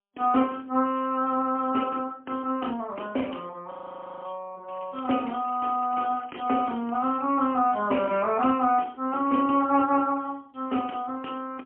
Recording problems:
telephone audio; 220 Hz to 3.2 kHz, AMR-NB, then MP3
frozen audio; at 3.5 s for 0.5 s
crackle; from 4.5 to 7 s; loose cable, SNR 27 dB

